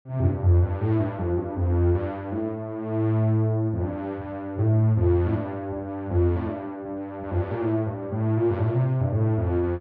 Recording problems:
none

